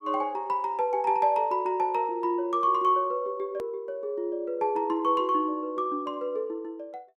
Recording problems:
edit click; at 3.5 s

